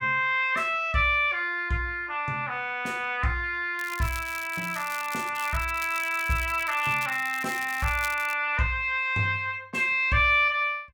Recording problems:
crackle; from 4 to 5.5 s and from 5.5 to 8.5 s; loose cable, SNR 15 dB

